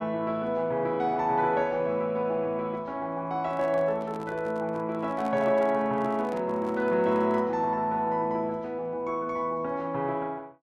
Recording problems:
microphone handling noise; from 3.5 to 7.5 s; peak -10 dB vs average level

